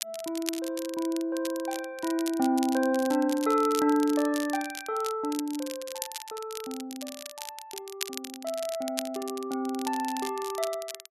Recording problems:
crackle; vinyl, SNR 10 dB

